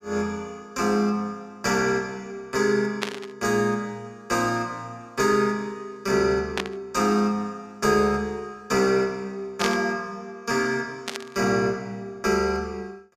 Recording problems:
burst of static; 4 times, first at 3 s; peak +2 dB vs average level

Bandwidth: 14.5 kHz